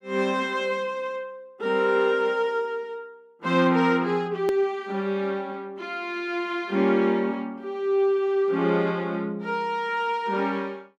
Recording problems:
hard cut with a click; at 4.5 s

